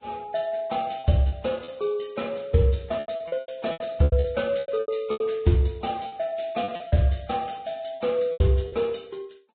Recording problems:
low-pass filter; nothing above 4 kHz
lossy compression; Vorbis, log-spectral distance 4 dB
packet loss; 12% of the sound replaced, filled with repeated pitch periods

